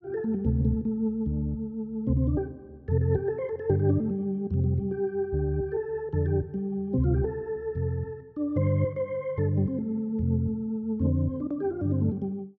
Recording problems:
none

